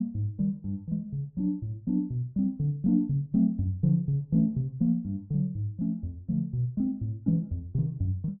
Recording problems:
none

